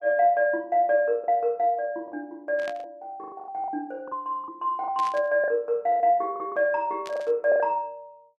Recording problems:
packet loss; 9% of the sound replaced, filled with the last packet
static burst; at 2.5 s, at 5 s and at 7 s; peak -10 dB vs average level

